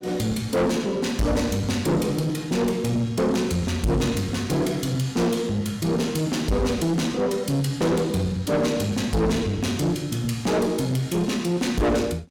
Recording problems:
distortion; soft clipping, signal-to-distortion ratio 7 dB

